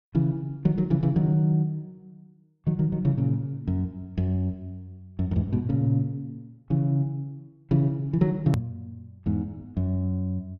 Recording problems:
edit click; at 8.5 s

